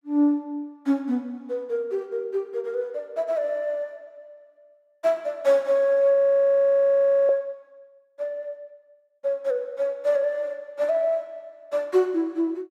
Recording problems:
audio freezing; at 6 s for 1 s

